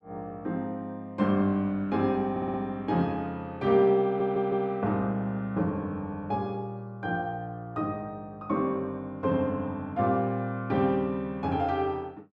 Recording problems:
audio stuttering; at 2.5 s and at 4 s

